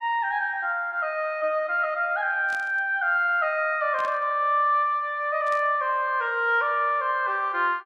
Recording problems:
static burst; at 2.5 s, at 4 s and at 5.5 s; peak -14 dB vs average level

